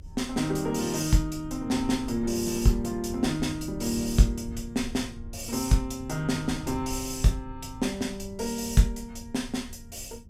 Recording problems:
low-frequency rumble; below 100 Hz, SNR 15 dB

